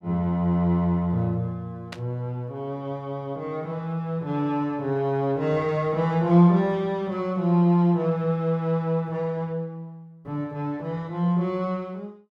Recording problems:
burst of static; at 2 s; peak -8 dB vs average level

